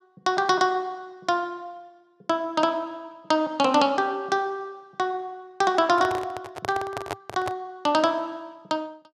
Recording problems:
microphone handling noise; from 6 to 7.5 s; peak -1 dB vs average level

